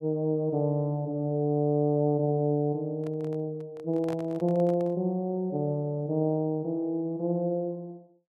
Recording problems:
microphone handling noise; from 3 to 5 s; peak -8 dB vs average level

